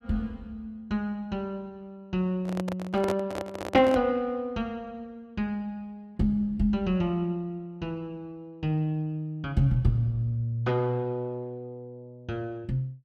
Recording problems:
handling noise; from 2.5 to 4 s; peak +2 dB vs average level

